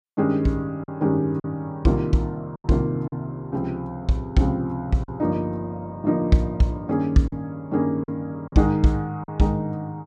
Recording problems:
packet loss; 4% of the sound replaced, filled with silence

